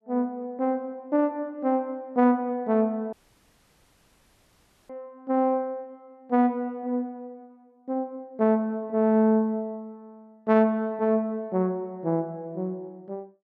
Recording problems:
dropout; at 3 s for 2 s

